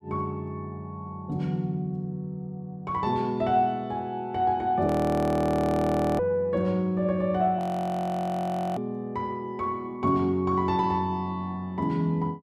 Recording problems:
frozen audio; at 5 s for 1.5 s and at 7.5 s for 1 s

